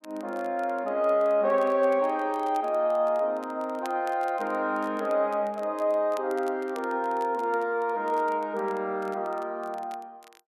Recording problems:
crackle; vinyl, SNR 27 dB

